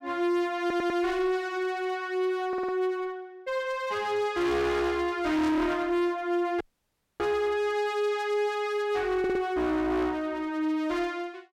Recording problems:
distorted audio; hard clipping, uneven, signal-to-distortion ratio 6 dB
audio stuttering; at 0.5 s, at 2.5 s and at 9 s
dropout; at 6.5 s for 0.5 s

